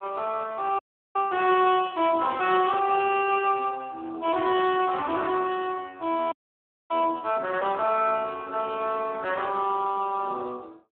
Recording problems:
telephone audio; 280 Hz to 3.5 kHz, Speex
frozen audio; at 1 s and at 6.5 s for 0.5 s

